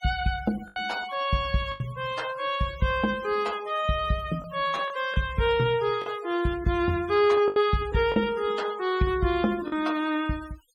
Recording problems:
noise reduction artefacts; signal-to-artefact ratio 18 dB
lost packets; 4% of the sound replaced, filled with the last packet

